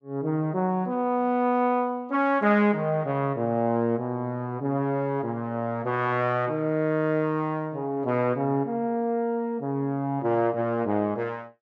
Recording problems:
none

